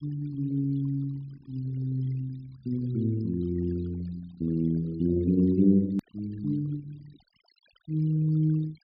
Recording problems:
treble cut off; nothing above 5.5 kHz
denoising artefacts; signal-to-artefact ratio 24 dB
click at an edit; at 6 s

